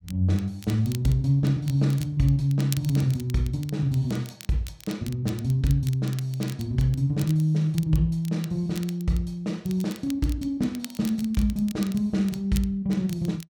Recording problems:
crackle; vinyl, SNR 19 dB

